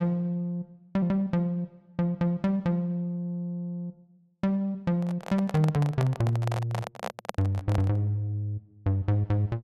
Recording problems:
microphone handling noise; from 5 to 8 s; peak +1 dB vs average level

